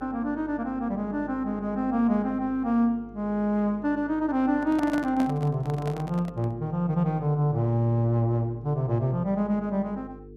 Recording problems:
hum; 50 Hz, harmonics up to 450 Hz, SNR 19 dB
handling noise; from 4.5 to 6.5 s; peak -3 dB vs average level

